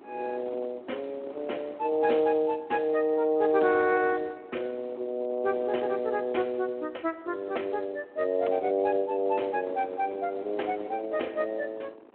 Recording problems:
telephone audio; 260 Hz to 3.3 kHz, Speex
wind noise; below 750 Hz, SNR 20 dB

